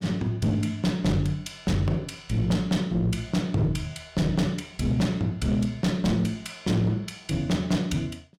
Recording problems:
distorted audio; hard clipping, uneven, signal-to-distortion ratio 10 dB

